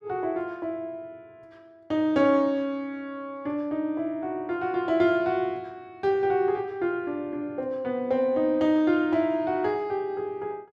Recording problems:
none

